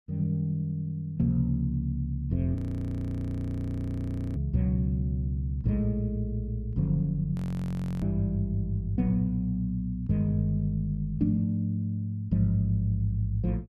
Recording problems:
frozen audio; at 2.5 s for 2 s and at 7.5 s for 0.5 s

